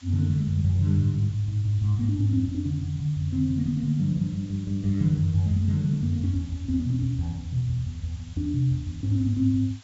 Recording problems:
low-pass filter; nothing above 8 kHz
hiss; slope +1 dB per octave, SNR 26 dB

